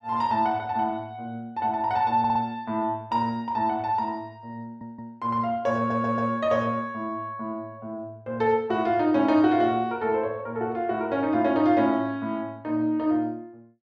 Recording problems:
stutter; at 2 s, at 4.5 s and at 6 s

